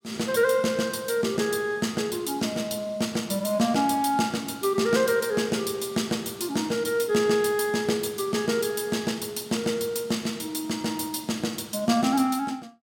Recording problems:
none

